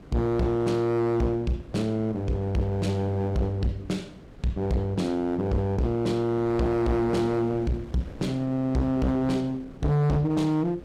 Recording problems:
distorted audio; hard clipping, uneven, signal-to-distortion ratio 5 dB
wind noise; below 470 Hz, SNR 20 dB

